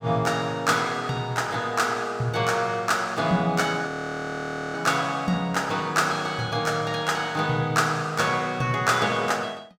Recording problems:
frozen audio; at 4 s for 1 s

